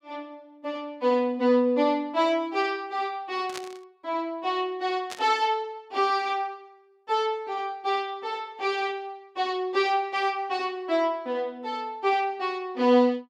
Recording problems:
static burst; at 3.5 s and at 5 s; peak -6 dB vs average level

